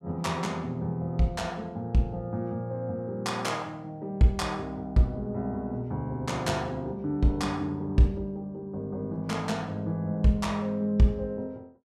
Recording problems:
none

